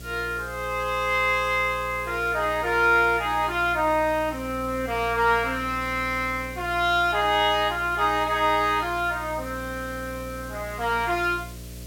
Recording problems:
electrical hum; 60 Hz, harmonics up to 660 Hz, SNR 17 dB
background hiss; slope +1 dB per octave, SNR 21 dB

